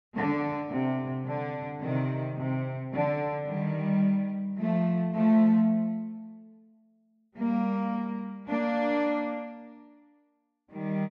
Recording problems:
none

